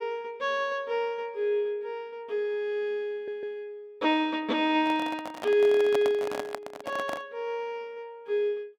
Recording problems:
audio stuttering; at 3 s
microphone handling noise; from 5 to 7.5 s; peak 0 dB vs average level

